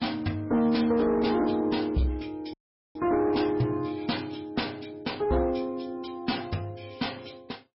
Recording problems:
codec artefacts; MP3, log-spectral distance 4 dB, nothing above 5.3 kHz
distorted audio; soft clipping, signal-to-distortion ratio 11 dB
dropout; at 2.5 s

